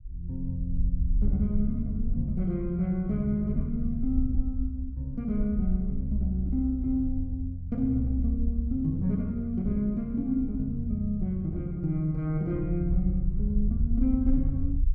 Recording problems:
rumble; below 60 Hz, SNR 6 dB

